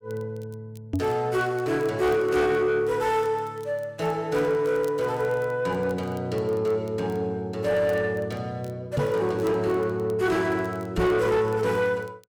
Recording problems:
distorted audio; soft clipping, signal-to-distortion ratio 11 dB
crackle; vinyl, SNR 30 dB
microphone thump; at 1 s, at 9 s and at 11 s; peak +3 dB vs average level

